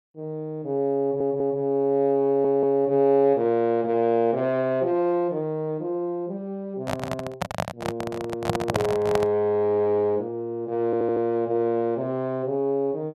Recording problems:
audio stuttering; at 1 s, at 2.5 s and at 11 s
handling noise; from 6.5 to 9.5 s; peak +3 dB vs average level

